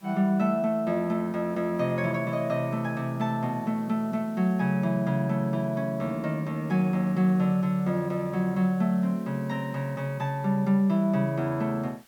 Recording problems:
hiss; slope -1 dB per octave, SNR 29 dB

